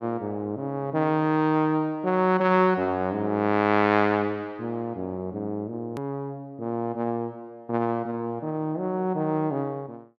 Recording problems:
click at an edit; at 6 s

